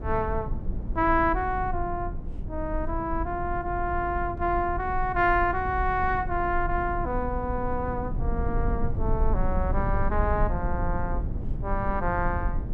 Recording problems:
low-frequency rumble; below 82 Hz, SNR 4 dB

